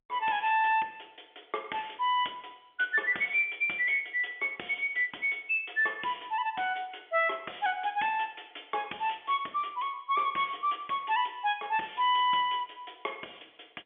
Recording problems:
phone line; 280 Hz to 3.4 kHz, G.711

